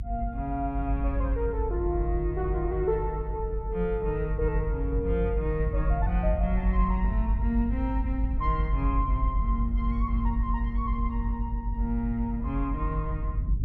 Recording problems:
rumble; below 54 Hz, strongest tone 52 Hz, SNR -1 dB

